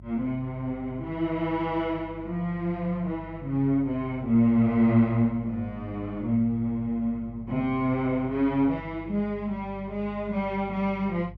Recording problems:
hum; 50 Hz, harmonics up to 400 Hz, SNR 18 dB

